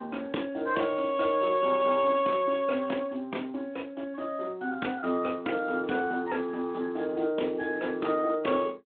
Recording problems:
telephone audio; 220 Hz to 3.7 kHz, Speex

